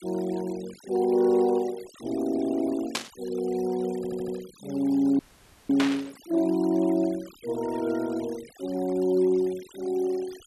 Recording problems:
noise reduction artefacts; signal-to-artefact ratio 21 dB
static burst; at 3 s and at 6 s; peak +3 dB vs average level
audio stuttering; at 4 s
audio cutting out; at 5 s for 0.5 s

